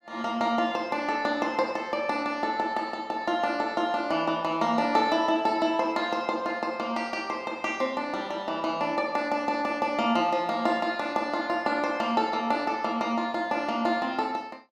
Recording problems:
none

